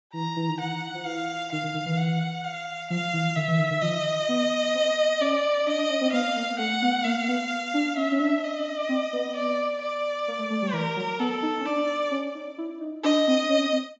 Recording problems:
treble cut off; nothing above 7.6 kHz

